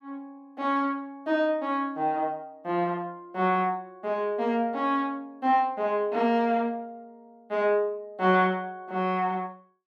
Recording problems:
none

